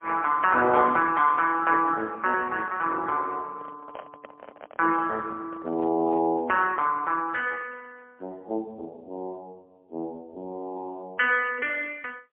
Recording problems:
telephone audio; 190 Hz to 3.2 kHz, AMR-NB, then MP3
microphone handling noise; from 3.5 to 6.5 s; peak -9 dB vs average level

